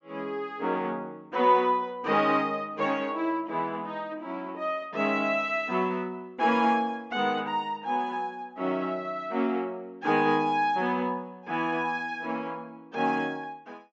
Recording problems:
treble missing; nothing above 8 kHz

